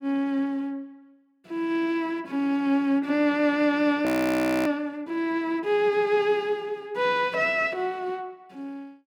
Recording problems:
audio freezing; at 4 s for 0.5 s

